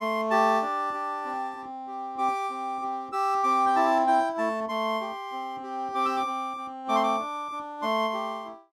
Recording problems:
none

